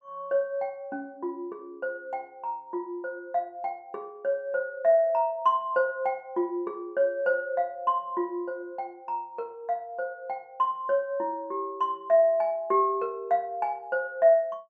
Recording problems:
none

